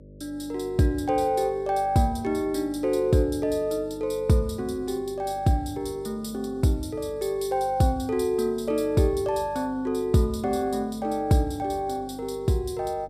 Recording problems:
hum; 50 Hz, harmonics up to 600 Hz, SNR 20 dB

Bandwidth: 14.5 kHz